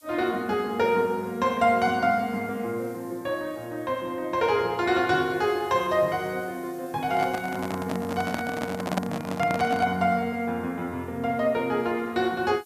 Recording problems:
hiss; SNR 27 dB
microphone handling noise; from 7 to 10 s; peak +3 dB vs average level

